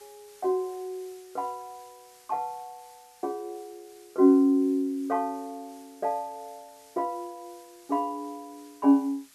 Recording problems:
background hiss; slope +2 dB per octave, SNR 27 dB

